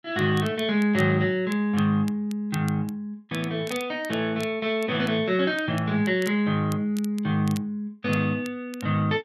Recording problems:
crackling; vinyl, SNR 21 dB

